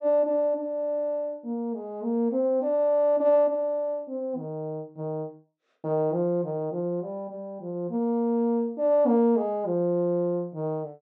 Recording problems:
none

